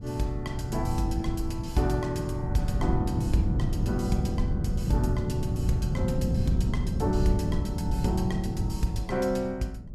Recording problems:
wind noise; below 160 Hz, SNR 0 dB

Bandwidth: 14.5 kHz